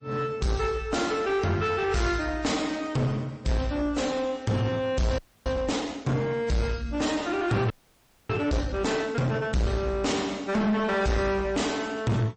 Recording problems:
codec artefacts; MP3, then MP3, log-spectral distance 3 dB, nothing above 8.2 kHz
distorted audio; soft clipping, signal-to-distortion ratio 6 dB
audio freezing; at 5 s and at 7.5 s for 0.5 s

